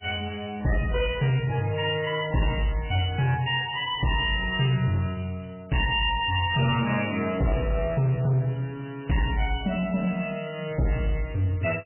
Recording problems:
lossy compression; MP3, log-spectral distance 7 dB, nothing above 2.4 kHz
distortion; soft clipping, signal-to-distortion ratio 11 dB

